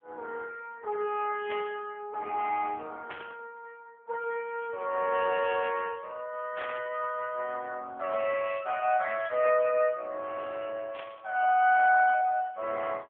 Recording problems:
telephone audio; 280 Hz to 3.3 kHz, AMR-NB
static burst; 4 times, first at 1.5 s; peak -7 dB vs average level

